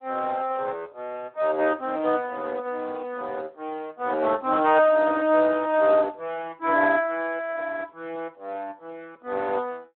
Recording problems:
phone line; 320 Hz to 3.4 kHz, Speex

